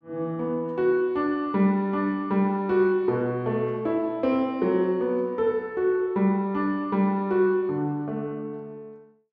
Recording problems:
none

